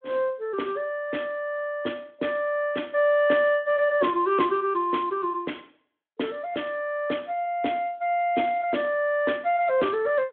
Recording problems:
phone line; 220 Hz to 3.4 kHz, Speex

